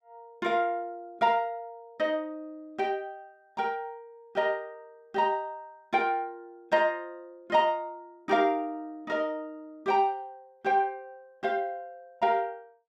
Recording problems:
none

